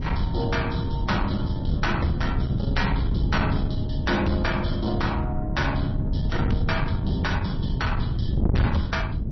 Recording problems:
lossy compression; MP3, log-spectral distance 2 dB, nothing above 5.8 kHz
distorted audio; soft clipping, signal-to-distortion ratio 8 dB
wind on the microphone; below 160 Hz, SNR -1 dB

